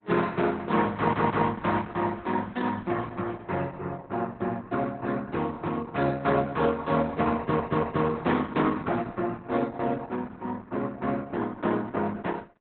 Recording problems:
lossy compression; Opus, log-spectral distance 3 dB, nothing above 4 kHz
audio stuttering; at 1 s and at 7.5 s

